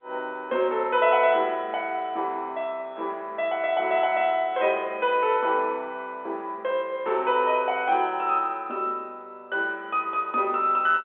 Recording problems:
telephone audio; 280 Hz to 3.5 kHz, G.711

